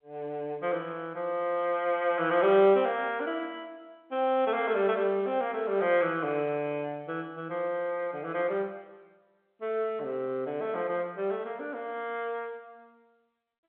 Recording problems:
phone line; 170 Hz to 3.5 kHz, G.711

